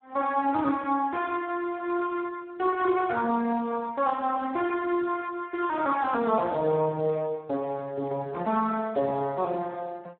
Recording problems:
phone line; 240 Hz to 3.8 kHz, Speex

